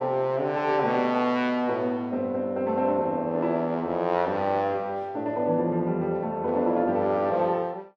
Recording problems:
none

